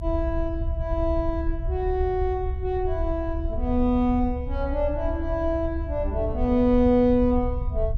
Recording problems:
rumble; below 70 Hz, SNR 6 dB

